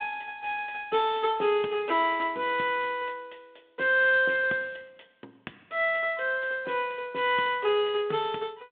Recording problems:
phone line; 240 Hz to 3.6 kHz, G.726

